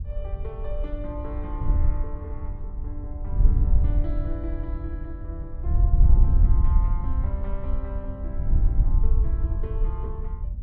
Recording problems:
wind on the microphone; below 64 Hz, SNR -13 dB

